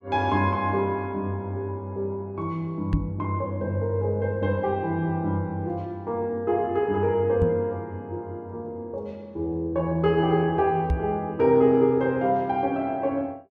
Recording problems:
knock on the microphone; at 3 s, at 7.5 s and at 11 s; peak +4 dB vs average level

